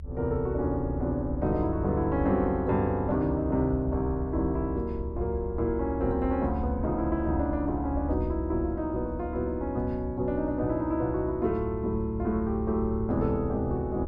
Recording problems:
low-frequency rumble; below 74 Hz, strongest tone 72 Hz, SNR 8 dB

